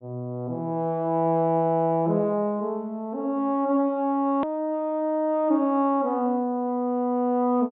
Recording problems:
treble cut off; nothing above 4 kHz
edit click; at 4.5 s

